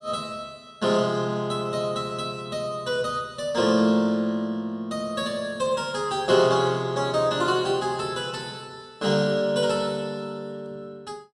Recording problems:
none

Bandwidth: 14.5 kHz